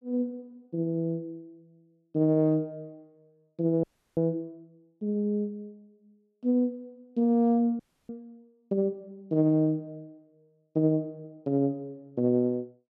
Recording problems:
audio freezing; at 4 s and at 8 s

